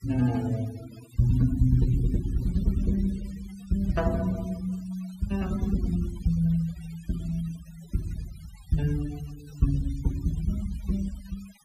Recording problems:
noise reduction artefacts; signal-to-artefact ratio 21 dB

